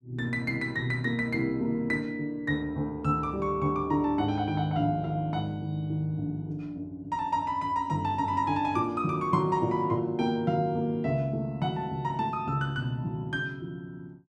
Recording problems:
none

